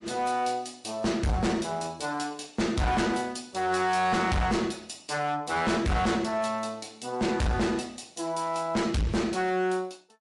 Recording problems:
lossy compression; MP3, log-spectral distance 3 dB, nothing above 11 kHz
distorted audio; hard clipping, uneven, signal-to-distortion ratio 6 dB

